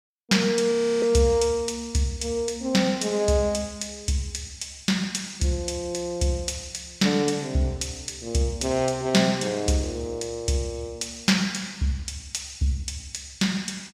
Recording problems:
audio freezing; at 0.5 s

